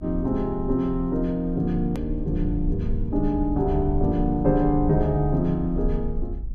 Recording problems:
low-frequency rumble; below 58 Hz, strongest tone 32 Hz, SNR 8 dB
click at an edit; at 2 s

